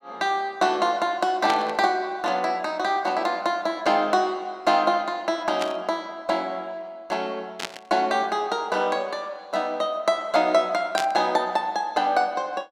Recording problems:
burst of static; 4 times, first at 1.5 s; peak 0 dB vs average level

